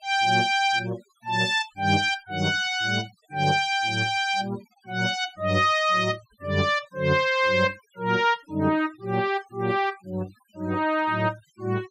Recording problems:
denoising artefacts; signal-to-artefact ratio 26 dB

